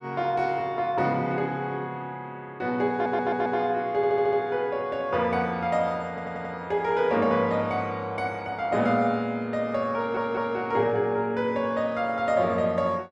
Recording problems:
audio stuttering; 4 times, first at 3 s

